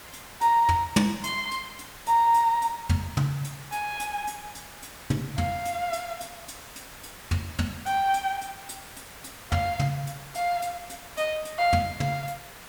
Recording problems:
background hiss; SNR 17 dB

